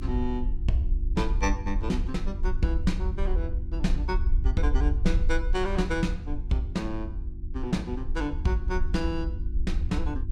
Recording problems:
hum; 50 Hz, harmonics up to 350 Hz, SNR 12 dB
rumble; below 58 Hz, SNR 0 dB

